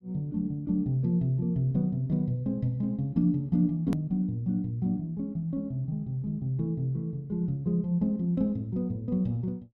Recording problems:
hard cut with a click; at 4 s

